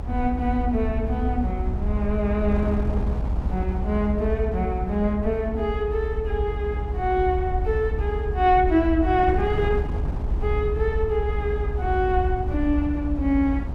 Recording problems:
rumble; below 72 Hz, SNR 4 dB
wind on the microphone; below 260 Hz, SNR 10 dB

